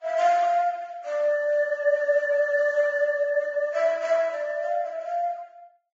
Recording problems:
lossy compression; Vorbis, then Vorbis, log-spectral distance 2 dB

